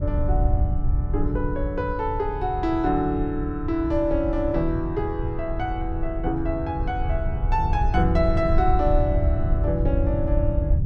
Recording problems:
low-frequency rumble; below 88 Hz, SNR 1 dB

